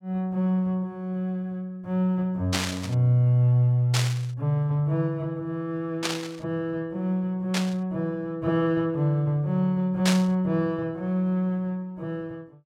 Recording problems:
burst of static; 5 times, first at 2.5 s; peak +4 dB vs average level

